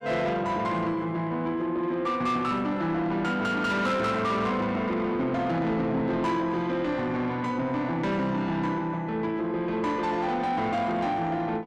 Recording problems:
distortion; soft clipping, signal-to-distortion ratio 11 dB

